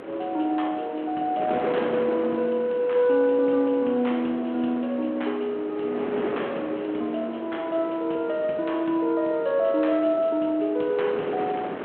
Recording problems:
phone line; 220 Hz to 3.4 kHz, G.726
wind on the microphone; below 810 Hz, SNR 10 dB

